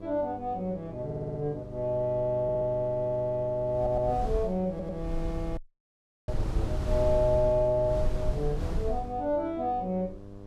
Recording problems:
electrical hum; 50 Hz, harmonics up to 1.2 kHz, SNR 17 dB
wind on the microphone; below 80 Hz, SNR 6 dB
stutter; 4 times, first at 1 s
audio cutting out; at 5.5 s for 0.5 s

